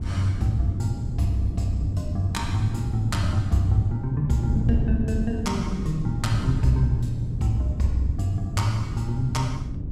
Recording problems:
wind noise; below 160 Hz, SNR 5 dB

